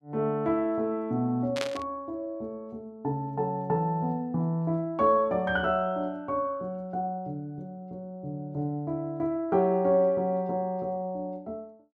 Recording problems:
burst of static; at 1.5 s; peak +1 dB vs average level

